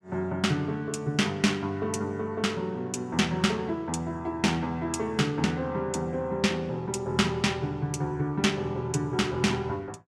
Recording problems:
none

